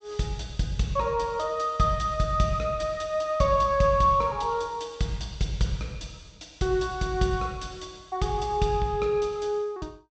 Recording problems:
treble cut off; nothing above 8 kHz

